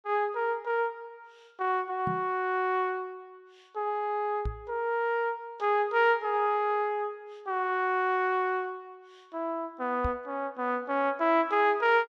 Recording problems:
knock on the microphone; at 2 s, at 4.5 s and at 10 s; peak -2 dB vs average level

